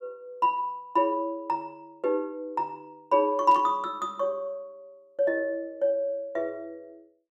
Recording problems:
static burst; at 3.5 s; peak -16 dB vs average level

